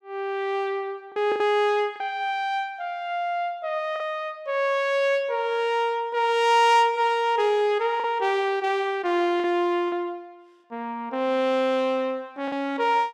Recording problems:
lost packets; 3% of the sound replaced, filled with the last packet

